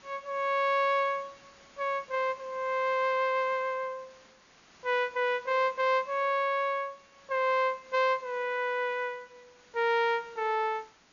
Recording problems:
treble missing; nothing above 6.9 kHz
background hiss; slope -2 dB per octave, SNR 27 dB

